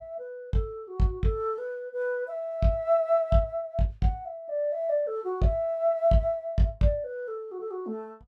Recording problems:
none

